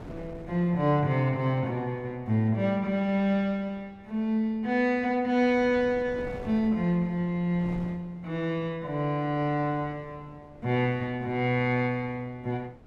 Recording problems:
wind noise; below 430 Hz, SNR 21 dB

